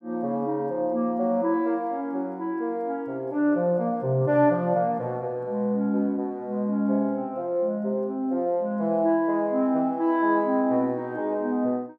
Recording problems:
none

